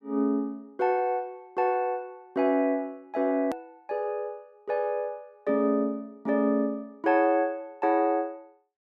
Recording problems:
edit click; at 3.5 s

